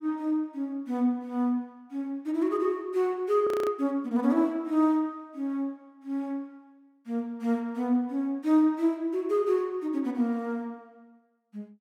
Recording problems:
frozen audio; at 3.5 s

